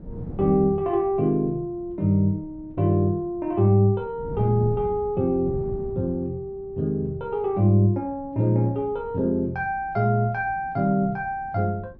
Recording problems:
wind noise; below 200 Hz, SNR 17 dB

